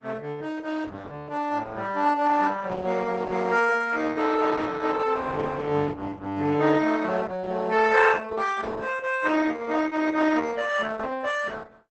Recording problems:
lossy codec; Opus, log-spectral distance 4 dB, nothing above 8 kHz

